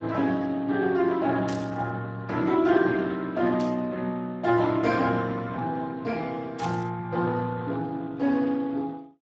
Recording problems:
lossy compression; Speex, log-spectral distance 3 dB, nothing above 7.3 kHz
burst of static; at 1.5 s, at 3.5 s and at 6.5 s; peak -9 dB vs average level

